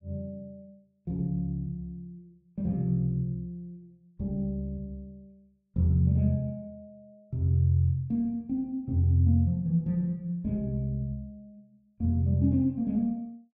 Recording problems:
none

